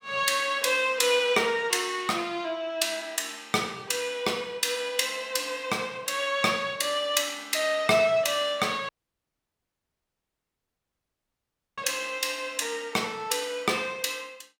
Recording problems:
dropout; at 9 s for 3 s

